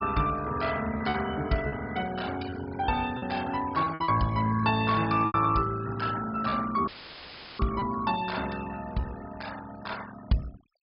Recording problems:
treble missing; nothing above 5.5 kHz
denoising artefacts; signal-to-artefact ratio 16 dB
lost packets; 5% of the sound replaced, filled with repeated pitch periods
audio cutting out; at 7 s for 0.5 s; filled with static

